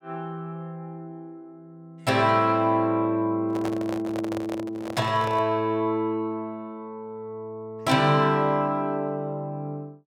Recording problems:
handling noise; from 3.5 to 5.5 s; peak -5 dB vs average level

